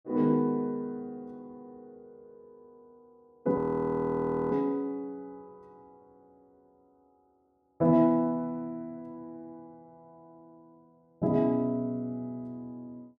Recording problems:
audio freezing; at 3.5 s for 1 s

